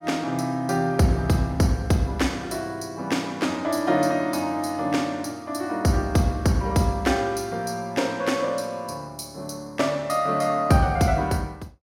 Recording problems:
none

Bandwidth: 16.5 kHz